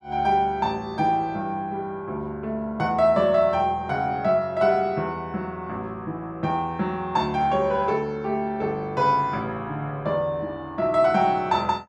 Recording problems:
none

